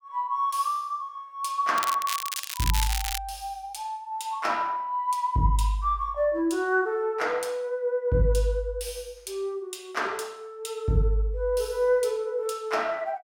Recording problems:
crackling; from 2 to 3 s; loose cable, SNR 4 dB

